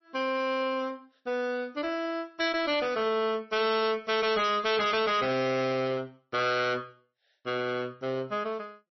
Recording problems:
lossy codec; MP3, log-spectral distance 3 dB, nothing above 5.8 kHz
distorted audio; hard clipping, signal-to-distortion ratio 7 dB

